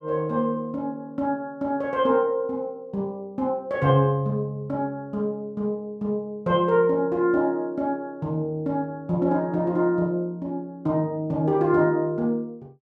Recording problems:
none

